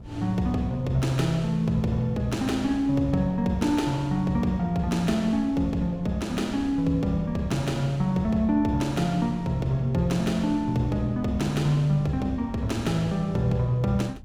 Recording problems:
wind noise; below 150 Hz, SNR 18 dB

